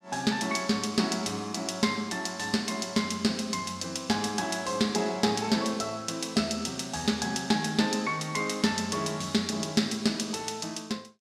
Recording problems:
none

